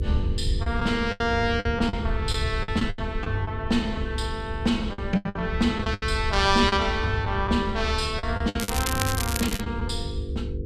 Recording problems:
hum; 50 Hz, harmonics up to 500 Hz, SNR 13 dB
rumble; below 86 Hz, SNR 6 dB
lost packets; 10% of the sound replaced, filled with the last packet
crackling; from 8.5 to 9.5 s; loose cable, SNR 4 dB

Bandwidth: 13.5 kHz